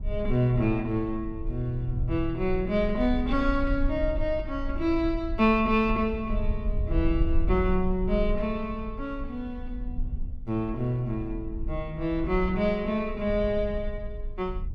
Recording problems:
rumble; below 58 Hz, SNR 7 dB

